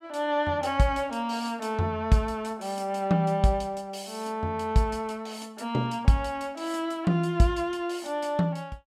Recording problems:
none

